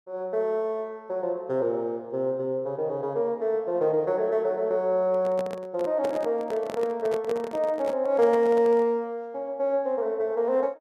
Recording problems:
handling noise; from 5 to 9 s; peak -4 dB vs average level

